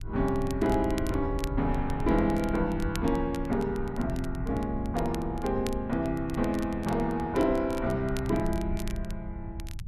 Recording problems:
low-frequency rumble; below 90 Hz, SNR 8 dB
crackle; vinyl, SNR 19 dB

